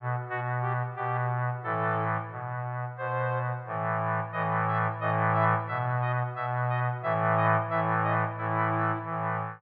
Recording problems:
none

